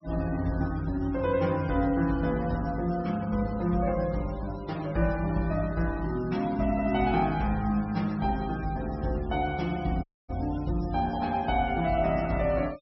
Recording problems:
treble cut off; nothing above 5.7 kHz
denoising artefacts; signal-to-artefact ratio 21 dB
audio cutting out; at 10 s

